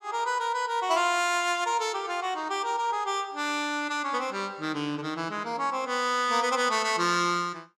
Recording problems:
none

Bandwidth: 15 kHz